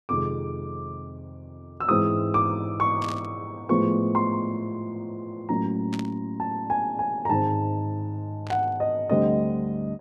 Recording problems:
static burst; at 3 s, at 6 s and at 8.5 s; peak -8 dB vs average level

